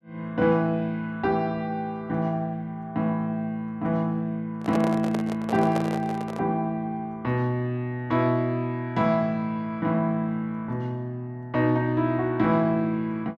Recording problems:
handling noise; from 4.5 to 6.5 s; peak -1 dB vs average level

